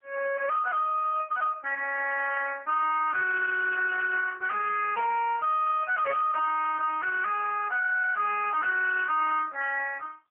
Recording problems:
telephone audio; 320 Hz to 3 kHz, AMR-NB, then MP3
distorted audio; hard clipping, signal-to-distortion ratio 9 dB

